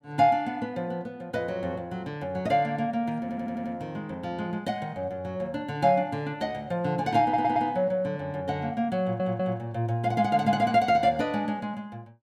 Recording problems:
audio stuttering; at 3 s, at 7 s and at 9 s

